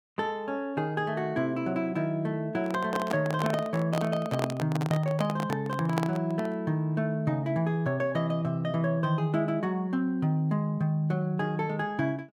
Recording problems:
microphone handling noise; from 2.5 to 6.5 s; peak +2 dB vs average level

